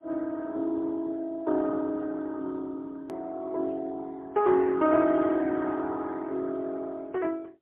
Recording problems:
telephone audio; 260 Hz to 2.5 kHz, AMR-NB, then MP3
click at an edit; at 3 s

